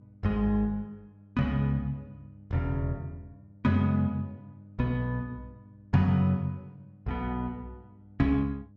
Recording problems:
hum; 50 Hz, harmonics up to 600 Hz, SNR 24 dB

